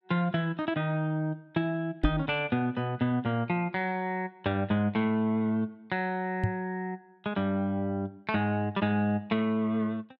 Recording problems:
microphone thump; at 2 s and at 6.5 s; peak +6 dB vs average level

